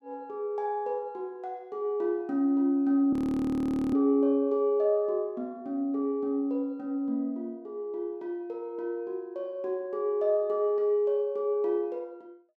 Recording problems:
frozen audio; at 3 s for 1 s

